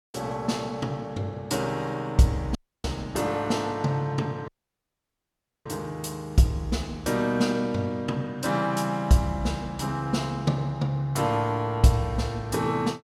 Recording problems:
dropout; at 2.5 s and at 4.5 s for 1 s

